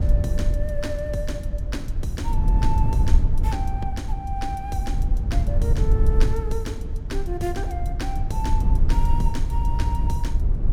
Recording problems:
rumble; below 72 Hz, SNR -7 dB

